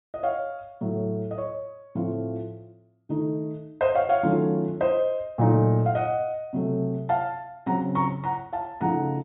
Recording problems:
low-pass filter; nothing above 4 kHz

